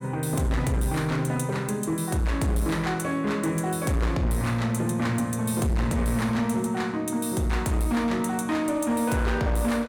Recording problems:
distortion; hard clipping, signal-to-distortion ratio 10 dB

